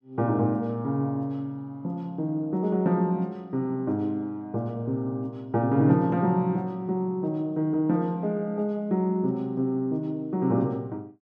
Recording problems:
none

